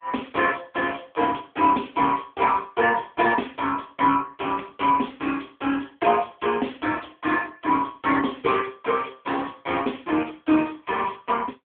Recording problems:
telephone audio; 190 Hz to 3.5 kHz, AMR-NB

